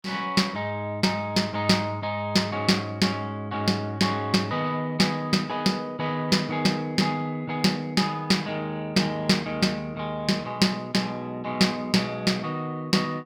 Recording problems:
none

